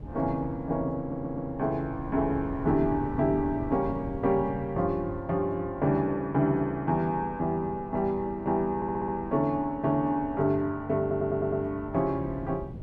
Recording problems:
wind on the microphone; below 200 Hz, SNR 14 dB
stutter; at 1 s, at 9 s and at 11 s

